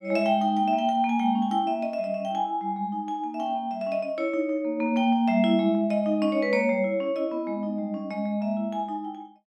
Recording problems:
none

